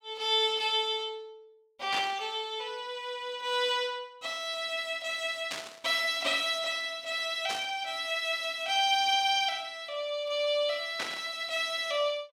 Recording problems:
burst of static; 4 times, first at 2 s; peak -1 dB vs average level

